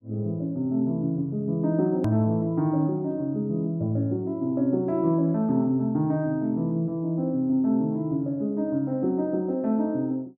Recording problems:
click at an edit; at 2 s

